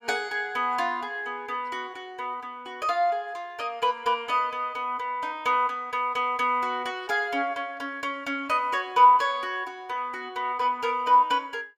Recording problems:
none

